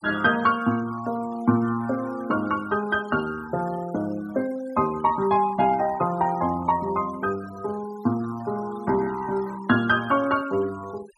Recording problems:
noise reduction artefacts; signal-to-artefact ratio 21 dB

